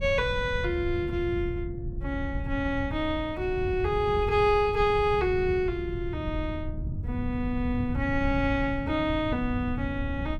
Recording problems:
wind on the microphone; below 120 Hz, SNR 7 dB

